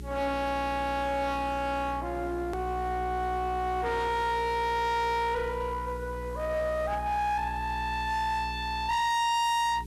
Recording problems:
distorted audio; hard clipping, uneven, signal-to-distortion ratio 6 dB
hum; 60 Hz, harmonics up to 420 Hz, SNR 11 dB
hiss; SNR 28 dB
click at an edit; at 2.5 s

